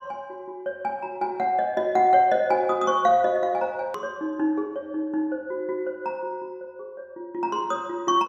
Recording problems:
click at an edit; at 4 s

